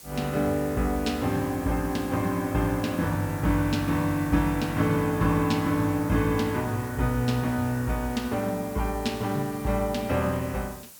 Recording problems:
background hiss; SNR 18 dB

